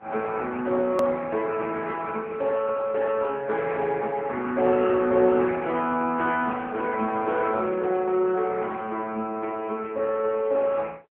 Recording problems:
phone line; 220 Hz to 3.4 kHz, AMR-NB
hard cut with a click; at 1 s

